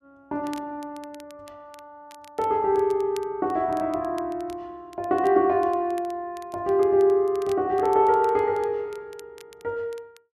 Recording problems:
crackle; vinyl, SNR 28 dB

